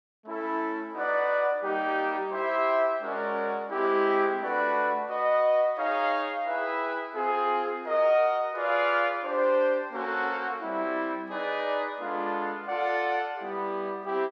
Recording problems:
none

